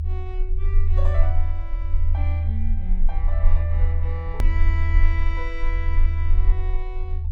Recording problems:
low-frequency rumble; below 76 Hz, strongest tone 20 Hz, SNR -13 dB
edit click; at 4.5 s

